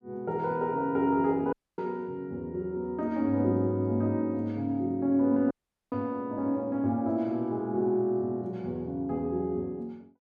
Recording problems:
dropout; at 1.5 s and at 5.5 s

